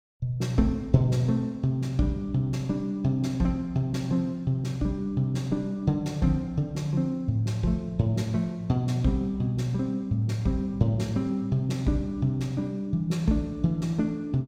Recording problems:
none

